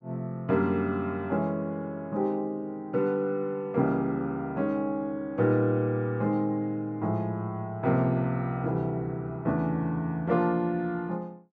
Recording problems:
none

